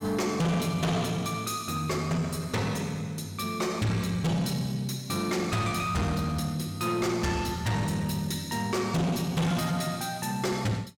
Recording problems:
distorted audio; soft clipping, signal-to-distortion ratio 6 dB

